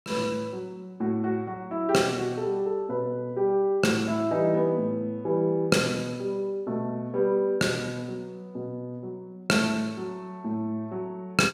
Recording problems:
none

